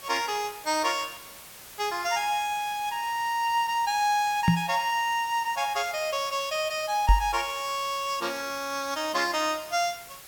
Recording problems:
background hiss; slope -1 dB per octave, SNR 16 dB
microphone bump; at 4.5 s and at 7 s; peak +9 dB vs average level

